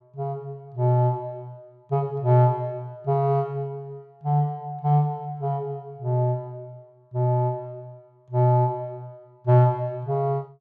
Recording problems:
none

